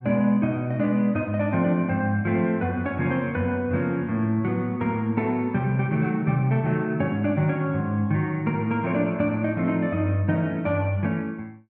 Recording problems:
none

